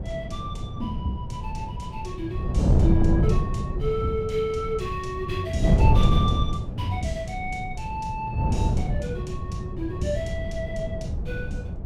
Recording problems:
wind noise; below 160 Hz, SNR -4 dB

